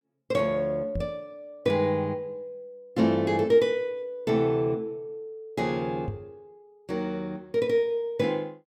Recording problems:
microphone thump; at 1 s and at 6 s; peak -2 dB vs average level

